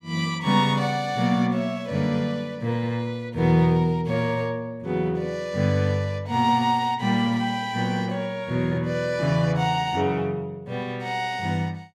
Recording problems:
none

